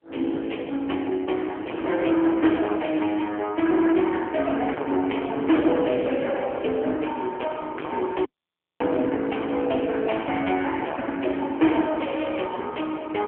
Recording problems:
telephone audio; 240 Hz to 3.2 kHz, AMR-NB
distorted audio; hard clipping, uneven, signal-to-distortion ratio 4 dB
audio cutting out; at 8.5 s for 0.5 s

